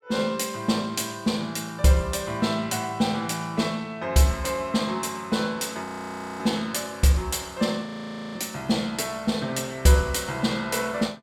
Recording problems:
audio freezing; at 6 s for 0.5 s and at 8 s for 0.5 s

